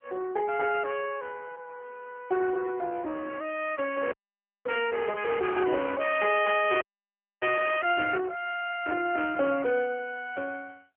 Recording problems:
telephone audio; 320 Hz to 3.3 kHz, AMR-NB
frozen audio; at 4 s for 0.5 s and at 7 s for 0.5 s

